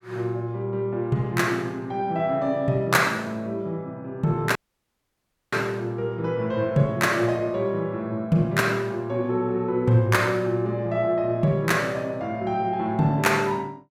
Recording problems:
audio cutting out; at 4.5 s for 1 s

